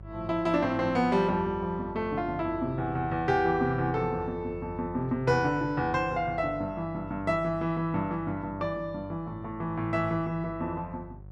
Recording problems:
hum; 50 Hz, harmonics up to 600 Hz, SNR 17 dB

